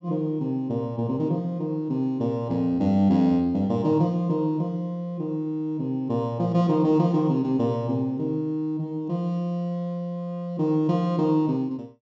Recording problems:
treble cut off; nothing above 7.7 kHz

